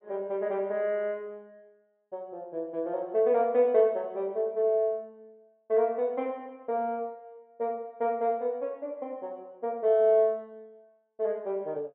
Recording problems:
treble missing; nothing above 3.6 kHz

